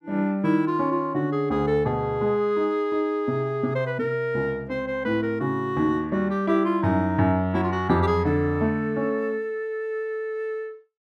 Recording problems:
none

